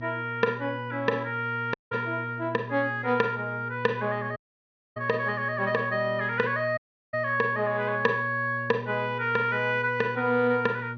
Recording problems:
low-pass filter; nothing above 6.4 kHz
electrical hum; 60 Hz, harmonics up to 600 Hz, SNR 12 dB
dropout; at 1.5 s, at 4.5 s for 0.5 s and at 7 s

